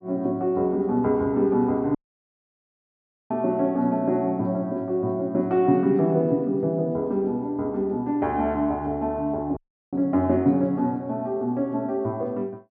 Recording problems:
dropout; at 2 s for 1.5 s and at 9.5 s

